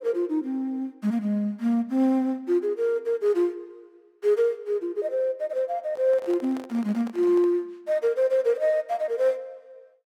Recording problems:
microphone handling noise; from 6 to 7.5 s; peak -12 dB vs average level

